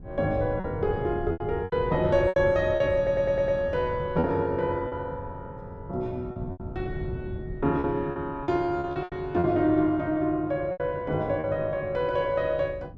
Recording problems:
wind on the microphone; below 170 Hz, SNR 13 dB
lost packets; 8% of the sound replaced, filled with repeated pitch periods
stutter; at 3 s

